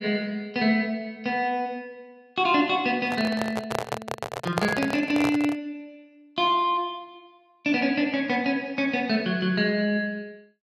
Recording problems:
handling noise; from 3 to 5.5 s; peak +3 dB vs average level

